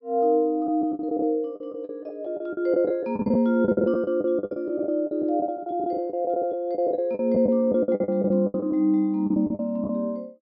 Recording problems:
low-pass filter; nothing above 5.6 kHz
lost packets; 17% of the sound replaced, filled with the last packet

